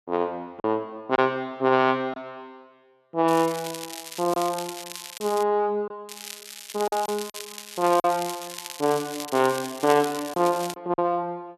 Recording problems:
packet loss; 4% of the sound replaced, filled with silence
crackling; from 3.5 to 5.5 s and from 6 to 11 s; loose cable, SNR 12 dB

